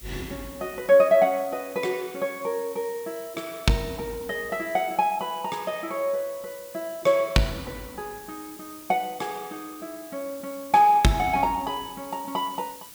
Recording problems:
background hiss; SNR 18 dB

